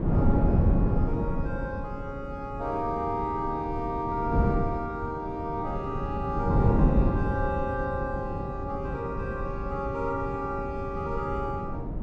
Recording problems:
wind noise; below 230 Hz, SNR -2 dB

